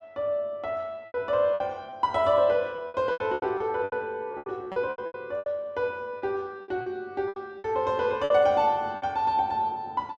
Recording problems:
lost packets; 13% of the sound replaced, filled with repeated pitch periods

